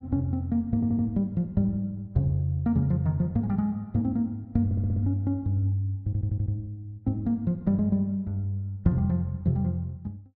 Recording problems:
stutter; at 0.5 s, at 4.5 s and at 6 s

